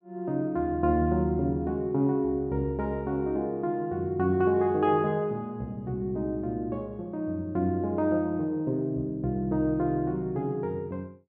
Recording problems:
none

